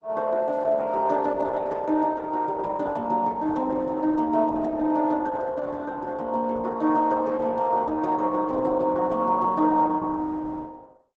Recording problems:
lossy codec; Opus, log-spectral distance 3 dB, nothing above 7.8 kHz

